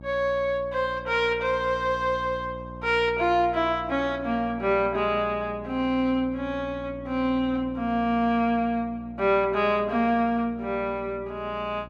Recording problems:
hum; 60 Hz, harmonics up to 960 Hz, SNR 17 dB

